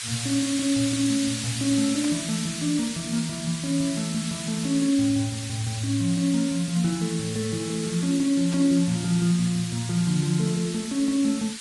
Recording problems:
lossy compression; Vorbis, log-spectral distance 11 dB
hiss; SNR 7 dB
static burst; at 2 s and at 8.5 s; peak -9 dB vs average level

